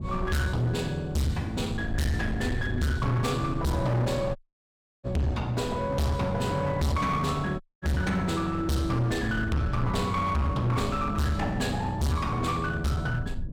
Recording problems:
distortion; hard clipping, uneven, signal-to-distortion ratio 6 dB
low-frequency rumble; below 130 Hz, SNR 11 dB
dropout; at 4.5 s for 0.5 s and at 7.5 s

